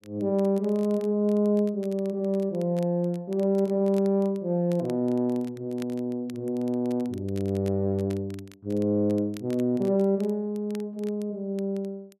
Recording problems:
crackle; vinyl, SNR 27 dB

